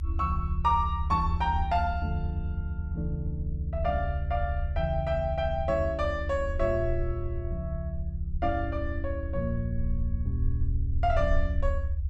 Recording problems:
rumble; below 78 Hz, SNR 2 dB

